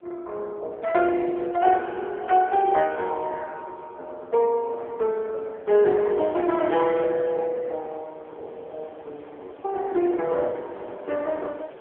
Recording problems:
telephone audio; 300 Hz to 3.6 kHz, AMR-NB
wind noise; below 830 Hz, SNR 24 dB

